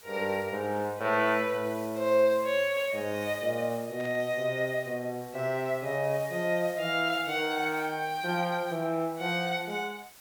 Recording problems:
background hiss; slope 0 dB per octave, SNR 20 dB
burst of static; at 4 s; peak -14 dB vs average level

